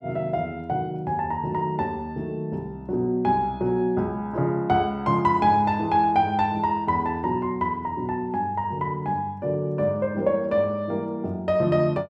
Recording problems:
none

